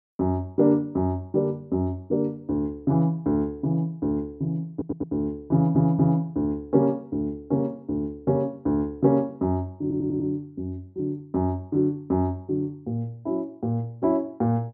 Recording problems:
stutter; at 4.5 s, at 5.5 s and at 10 s

